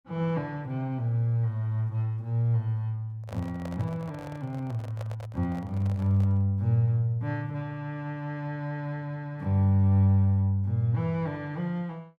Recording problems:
microphone handling noise; from 3 to 6.5 s; peak -8 dB vs average level

